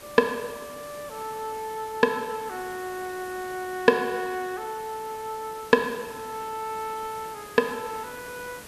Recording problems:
hiss; slope -4 dB per octave, SNR 15 dB

